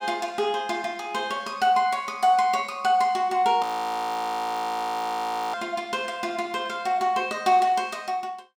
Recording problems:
frozen audio; at 3.5 s for 2 s

